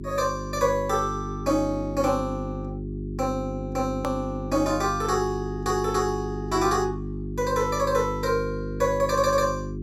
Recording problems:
hum; 50 Hz, harmonics up to 400 Hz, SNR 7 dB
hard cut with a click; at 4 s

